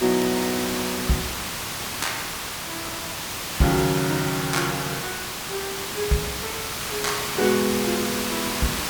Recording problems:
hiss; slope -1 dB per octave, SNR 2 dB
crackling; vinyl, SNR 25 dB

